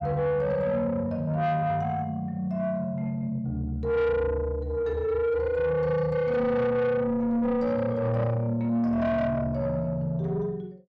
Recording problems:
distortion; soft clipping, signal-to-distortion ratio 11 dB

